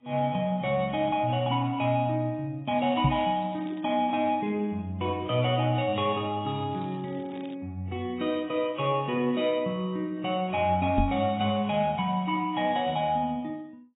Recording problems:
lossy compression; AAC, log-spectral distance 3 dB, nothing above 3.1 kHz
crackling; from 3 to 4 s and from 6.5 to 7.5 s; loose cable, SNR 27 dB
microphone bump; at 3 s and at 11 s; peak +7 dB vs average level

